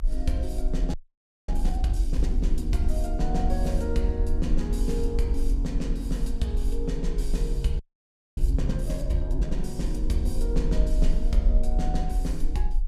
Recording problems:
rumble; below 46 Hz, SNR -1 dB
wind noise; below 370 Hz, SNR 23 dB
frozen audio; at 1 s for 0.5 s and at 8 s for 0.5 s

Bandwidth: 14.5 kHz